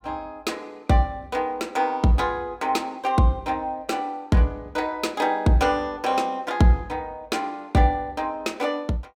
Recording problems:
none

